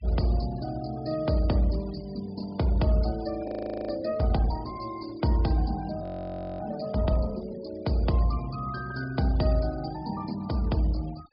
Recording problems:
low-pass filter; nothing above 5.5 kHz
denoising artefacts; signal-to-artefact ratio 20 dB
audio freezing; at 3.5 s and at 6 s for 0.5 s

